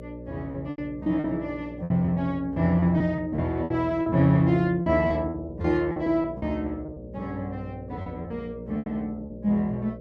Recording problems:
hum; 60 Hz, harmonics up to 600 Hz, SNR 15 dB
packet loss; 10% of the sound replaced, filled with repeated pitch periods

